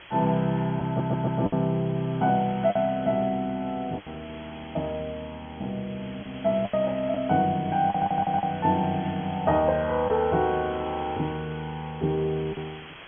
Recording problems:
treble missing; nothing above 3.3 kHz
background hiss; SNR 18 dB
packet loss; 4% of the sound replaced, filled with the last packet
audio stuttering; at 1 s and at 8 s

